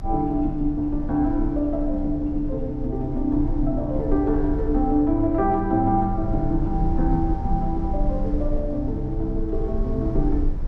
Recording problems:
low-frequency rumble; below 60 Hz, strongest tone 26 Hz, SNR 6 dB

